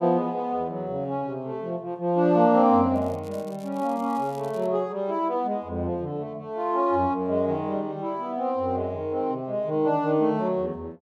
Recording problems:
crackling; from 3 to 4.5 s; loose cable, SNR 27 dB

